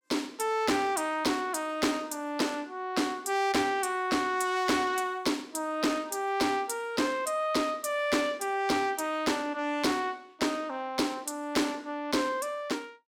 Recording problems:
distortion; soft clipping, signal-to-distortion ratio 12 dB

